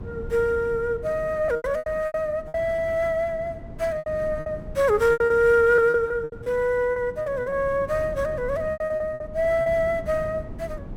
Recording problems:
wind on the microphone; below 230 Hz, SNR 16 dB
packet loss; 11% of the sound replaced, filled with repeated pitch periods

